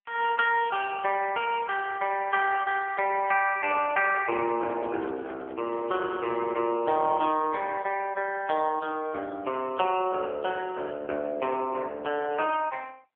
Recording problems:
telephone audio; 280 Hz to 3.3 kHz, AMR-NB
handling noise; from 3.5 to 7 s; peak -7 dB vs average level

